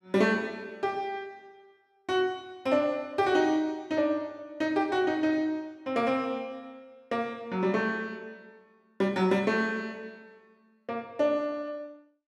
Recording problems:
none

